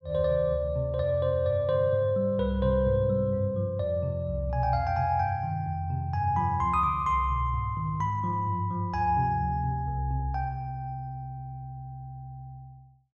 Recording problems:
none

